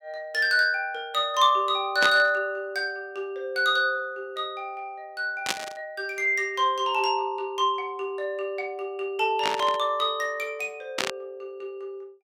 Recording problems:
burst of static; 4 times, first at 2 s; peak +4 dB vs average level

